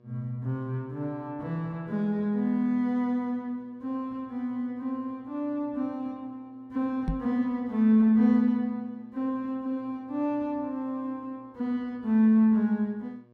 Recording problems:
hum; 60 Hz, harmonics up to 1.7 kHz, SNR 31 dB
microphone bump; at 7 s; peak +2 dB vs average level

